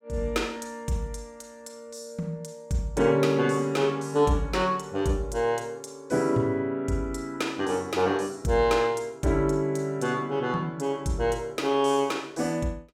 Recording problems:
none

